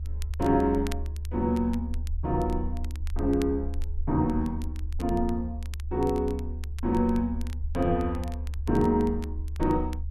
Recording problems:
low-frequency rumble; below 74 Hz, strongest tone 72 Hz, SNR 6 dB
crackling; vinyl, SNR 22 dB

